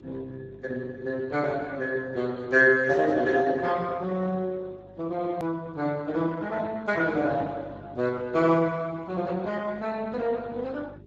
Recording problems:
lossy codec; Speex, log-spectral distance 3 dB
electrical hum; 50 Hz, harmonics up to 550 Hz, SNR 23 dB
click at an edit; at 5.5 s

